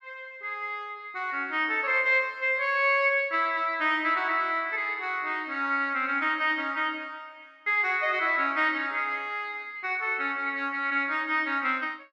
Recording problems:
none

